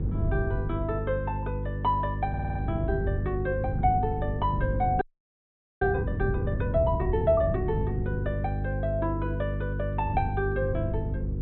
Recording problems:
treble missing; nothing above 3.9 kHz
electrical hum; 50 Hz, harmonics up to 500 Hz, SNR 2 dB
wind noise; below 140 Hz, SNR 6 dB
stutter; at 2.5 s
audio freezing; at 5 s for 1 s

